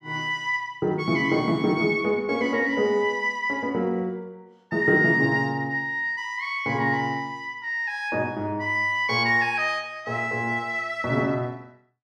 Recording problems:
none

